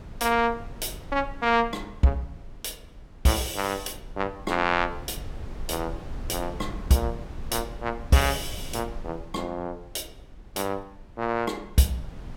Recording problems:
wind noise; below 110 Hz, SNR 15 dB

